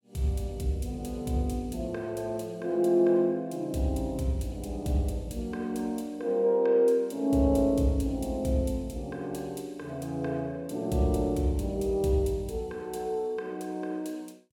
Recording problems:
none

